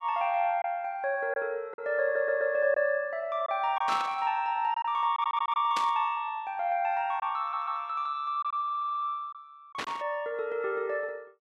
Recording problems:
packet loss; 3% of the sound replaced, filled with silence
audio stuttering; 4 times, first at 2 s
burst of static; at 4 s, at 6 s and at 10 s; peak -1 dB vs average level

